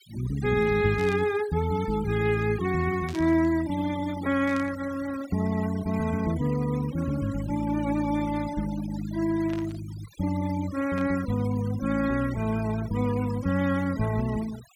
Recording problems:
noise reduction artefacts; signal-to-artefact ratio 16 dB
static burst; 5 times, first at 1 s; peak -11 dB vs average level

